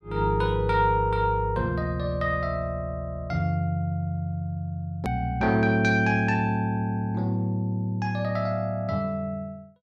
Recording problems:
hard cut with a click; at 5 s

